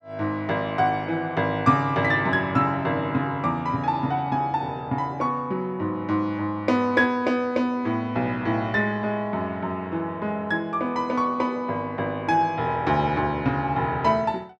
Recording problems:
none

